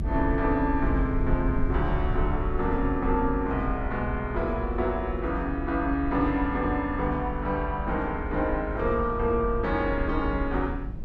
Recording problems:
rumble; below 68 Hz, SNR 5 dB

